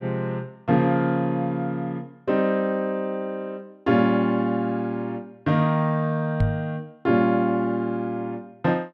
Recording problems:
knock on the microphone; at 6.5 s; peak +5 dB vs average level

